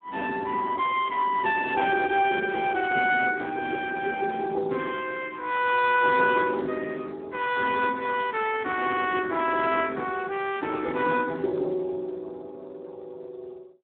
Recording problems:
telephone audio; 260 Hz to 3.5 kHz, Speex

